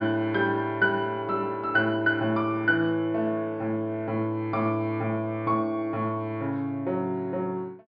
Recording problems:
low-pass filter; nothing above 5.5 kHz

